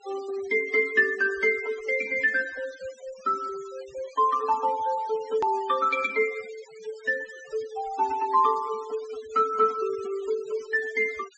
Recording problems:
low-pass filter; nothing above 8 kHz
denoising artefacts; signal-to-artefact ratio 20 dB
edit click; at 5.5 s

